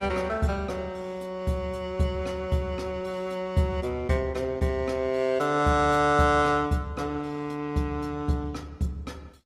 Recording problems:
lossy codec; Opus, log-spectral distance 2 dB, nothing above 15.5 kHz

